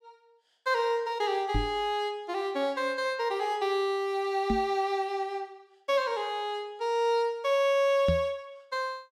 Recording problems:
knock on the microphone; at 1.5 s, at 4.5 s and at 8 s; peak +3 dB vs average level

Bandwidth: 17.5 kHz